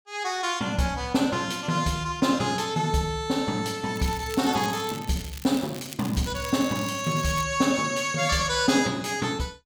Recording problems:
crackling; from 4 to 7.5 s; loose cable, SNR 15 dB

